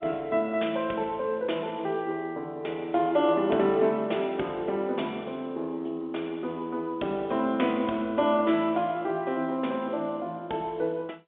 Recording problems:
phone line; 240 Hz to 3.6 kHz, G.711

